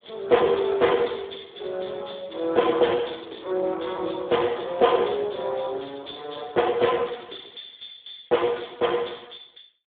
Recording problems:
phone line; 280 Hz to 3.6 kHz, Speex

